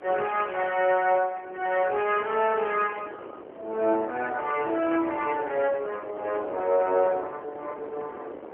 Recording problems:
telephone audio; 300 Hz to 2.9 kHz, AMR-NB
wind noise; below 700 Hz, SNR 16 dB

